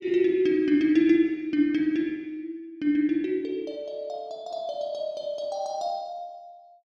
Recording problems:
none

